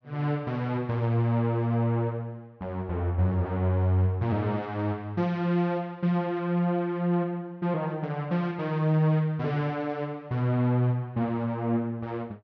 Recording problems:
treble missing; nothing above 6.6 kHz

